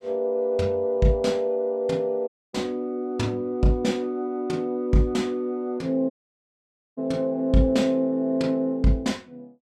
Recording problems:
dropout; at 2.5 s and at 6 s for 1 s

